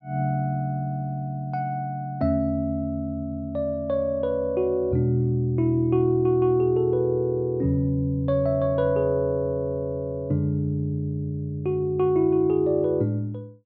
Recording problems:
none

